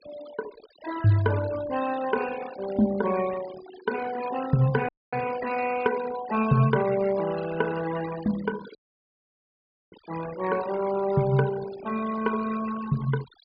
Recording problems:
low-pass filter; nothing above 5 kHz
noise reduction artefacts; signal-to-artefact ratio 14 dB
dropout; at 5 s and at 9 s for 1 s

